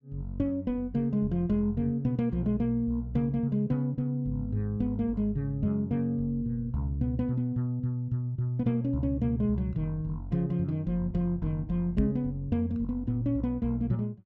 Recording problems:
microphone thump; at 12 s; peak +5 dB vs average level

